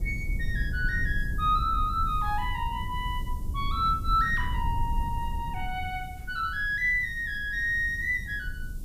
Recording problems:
hiss; SNR 27 dB
low-frequency rumble; below 80 Hz, SNR 6 dB

